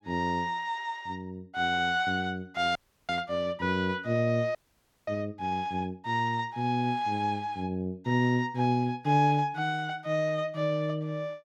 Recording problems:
frozen audio; at 3 s and at 4.5 s for 0.5 s

